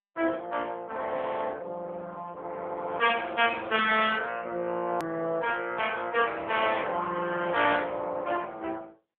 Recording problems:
telephone audio; 240 Hz to 3.4 kHz, AMR-NB
click at an edit; at 5 s

